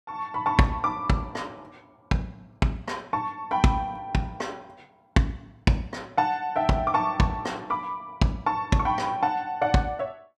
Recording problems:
none

